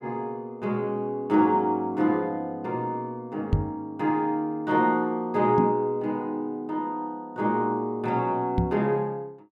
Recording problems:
knock on the microphone; at 3.5 s, at 5.5 s and at 8.5 s; peak +7 dB vs average level

